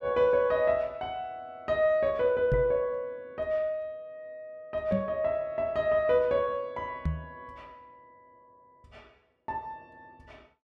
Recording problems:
knock on the microphone; at 2.5 s, at 5 s and at 7 s; peak +2 dB vs average level

